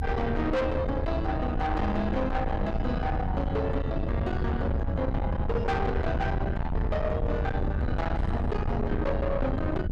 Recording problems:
distorted audio; soft clipping, signal-to-distortion ratio 7 dB
low-frequency rumble; below 240 Hz, SNR 1 dB

